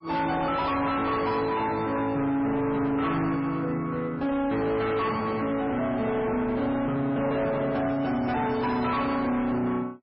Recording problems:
codec artefacts; MP3, log-spectral distance 2 dB, nothing above 4.5 kHz
distortion; soft clipping, signal-to-distortion ratio 8 dB

